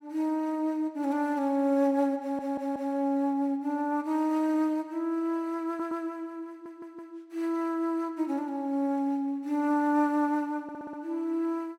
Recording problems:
audio stuttering; 4 times, first at 2 s

